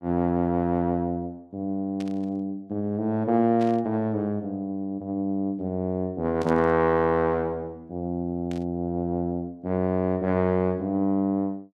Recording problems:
static burst; 4 times, first at 2 s; peak -12 dB vs average level

